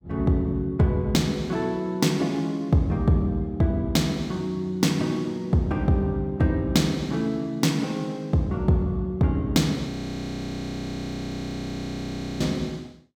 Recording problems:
audio freezing; at 10 s for 2.5 s

